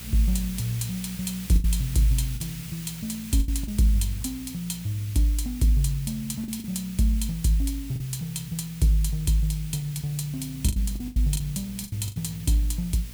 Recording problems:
electrical hum; 60 Hz, harmonics up to 480 Hz, SNR 18 dB
hiss; slope +2 dB per octave, SNR 15 dB
lost packets; 6% of the sound replaced, filled with the last packet

